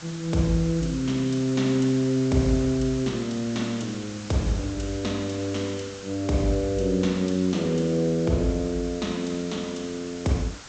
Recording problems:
low-pass filter; nothing above 8 kHz
background hiss; SNR 15 dB

